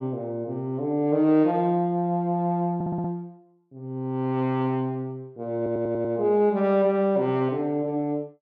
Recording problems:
audio stuttering; at 3 s and at 5.5 s

